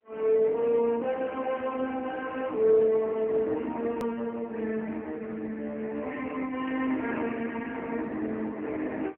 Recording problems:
telephone audio; 240 Hz to 3.1 kHz, AMR-NB
hard cut with a click; at 4 s

